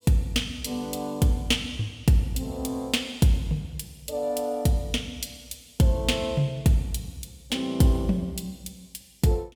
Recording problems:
none

